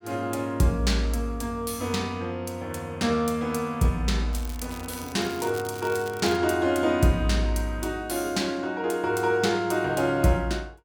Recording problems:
crackling; from 4.5 to 6.5 s; loose cable, SNR 17 dB

